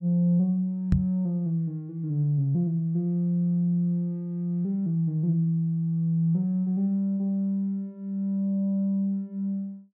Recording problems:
microphone bump; at 1 s; peak +7 dB vs average level

